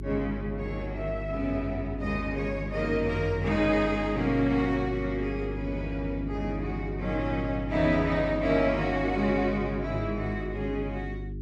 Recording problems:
electrical hum; 50 Hz, harmonics up to 400 Hz, SNR 8 dB

